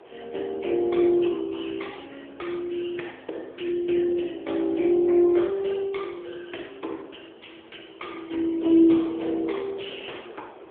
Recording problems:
telephone audio; 280 Hz to 3.6 kHz, AMR-NB
wind on the microphone; below 840 Hz, SNR 24 dB

